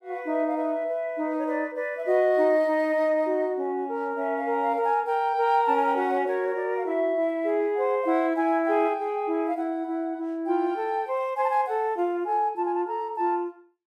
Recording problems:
none

